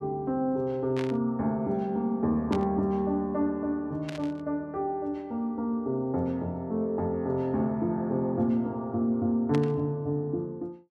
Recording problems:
burst of static; 4 times, first at 1 s; peak -5 dB vs average level

